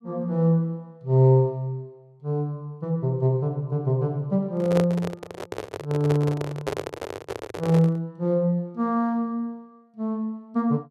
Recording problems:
handling noise; from 4.5 to 8 s; peak +1 dB vs average level

